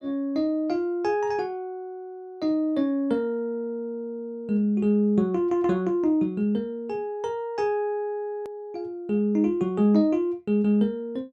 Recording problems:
edit click; at 8.5 s

